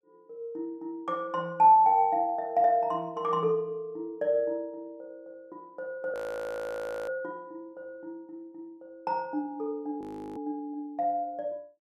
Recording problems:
audio freezing; at 6 s for 1 s and at 10 s

